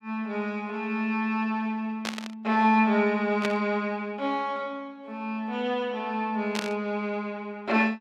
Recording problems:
burst of static; at 2 s, at 3.5 s and at 6.5 s; peak +1 dB vs average level

